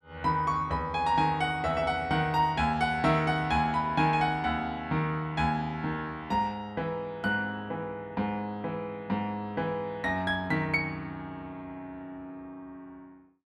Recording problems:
none

